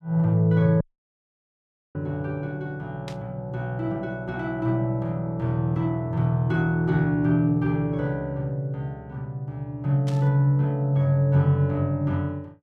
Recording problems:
audio cutting out; at 1 s for 1 s
burst of static; at 3 s and at 10 s; peak -11 dB vs average level

